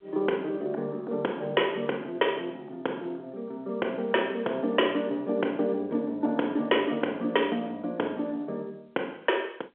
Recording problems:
telephone audio; 320 Hz to 3.4 kHz, G.711

